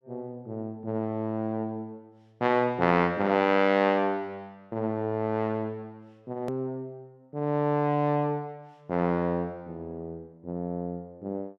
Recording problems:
hard cut with a click; at 6.5 s

